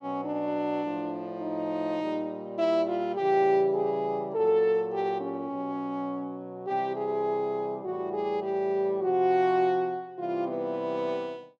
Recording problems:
none

